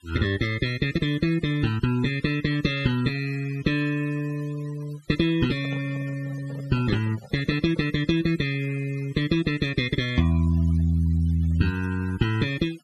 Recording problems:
denoising artefacts; signal-to-artefact ratio 19 dB
microphone handling noise; from 5.5 to 8 s; peak -10 dB vs average level

